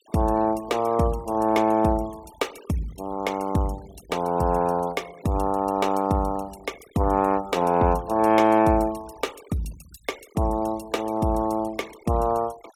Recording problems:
noise reduction artefacts; signal-to-artefact ratio 24 dB

